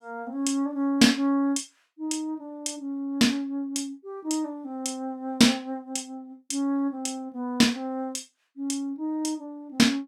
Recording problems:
none

